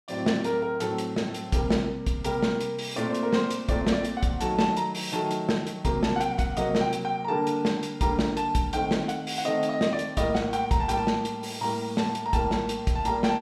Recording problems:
none

